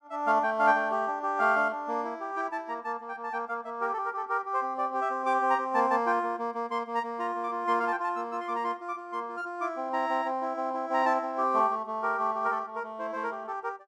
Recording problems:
none

